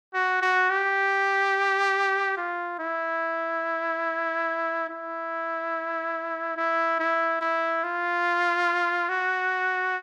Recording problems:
none

